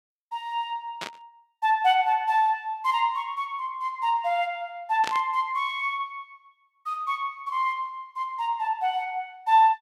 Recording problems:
burst of static; at 1 s and at 5 s; peak -1 dB vs average level

